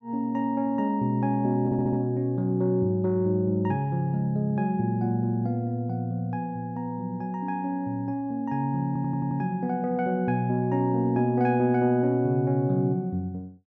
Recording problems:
audio stuttering; at 1.5 s and at 9 s

